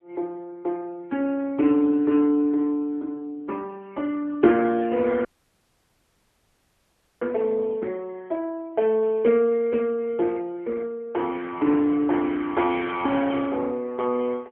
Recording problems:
phone line; 190 Hz to 3.3 kHz, AMR-NB
dropout; at 5.5 s for 2 s

